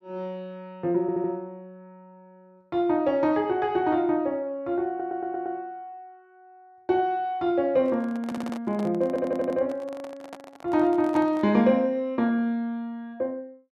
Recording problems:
stutter; 4 times, first at 1 s
microphone handling noise; from 8 to 12 s; peak -7 dB vs average level

